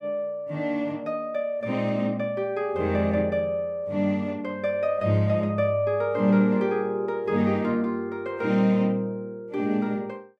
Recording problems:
none

